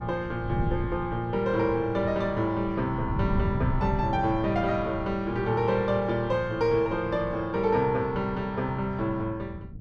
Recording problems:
wind on the microphone; below 160 Hz, SNR 9 dB

